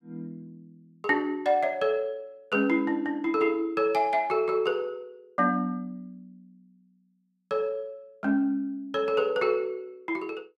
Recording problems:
none

